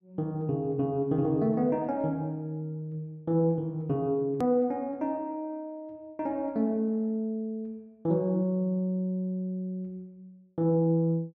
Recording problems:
treble missing; nothing above 8 kHz
click at an edit; at 4.5 s

